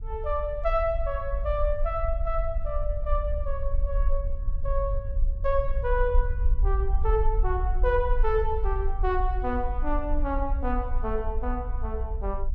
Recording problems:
rumble; below 52 Hz, SNR 0 dB

